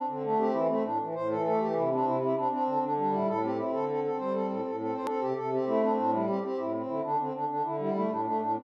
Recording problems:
edit click; at 5 s

